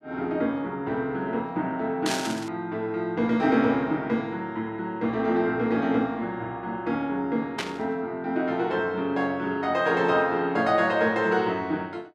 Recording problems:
static burst; at 2 s and at 7.5 s; peak 0 dB vs average level

